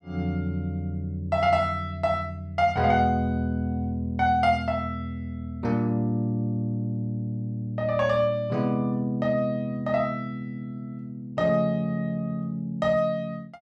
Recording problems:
none

